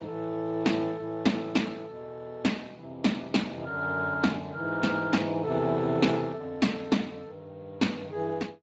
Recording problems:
lossy compression; Speex, then Speex, log-spectral distance 3 dB, nothing above 7.3 kHz

